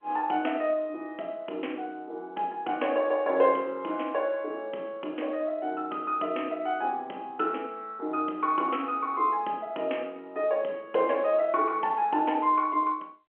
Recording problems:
telephone audio; 280 Hz to 3.2 kHz, G.711

